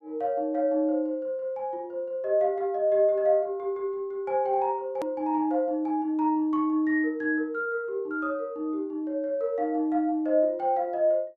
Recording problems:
hard cut with a click; at 5 s

